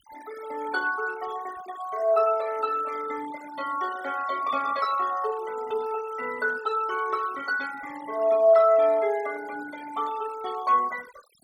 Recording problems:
noise reduction artefacts; signal-to-artefact ratio 19 dB

